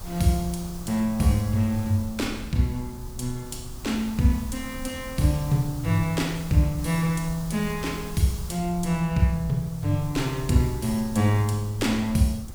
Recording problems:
hiss; SNR 18 dB
rumble; below 98 Hz, SNR 16 dB

